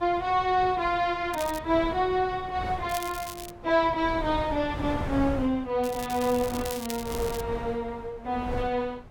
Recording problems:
wind noise; below 540 Hz, SNR 12 dB
crackle; at 1.5 s, at 3 s and from 6 to 7.5 s; loose cable, SNR 13 dB

